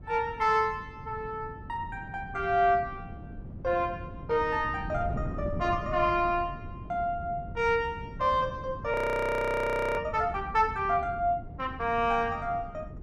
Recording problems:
wind on the microphone; below 190 Hz, SNR 12 dB
frozen audio; at 9 s for 1 s

